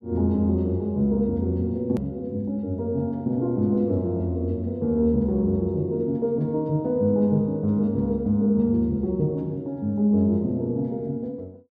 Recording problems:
edit click; at 2 s

